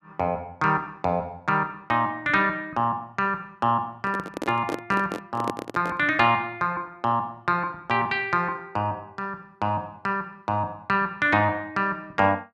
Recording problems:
handling noise; from 4 to 6 s; peak -1 dB vs average level

